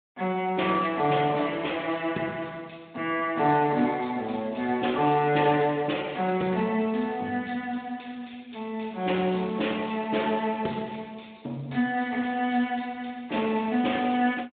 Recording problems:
telephone audio; 260 Hz to 3.6 kHz, Speex

